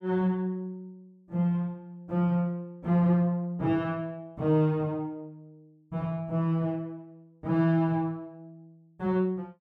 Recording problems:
none

